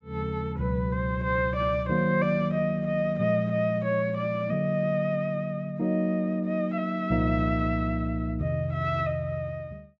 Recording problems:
treble missing; nothing above 8 kHz

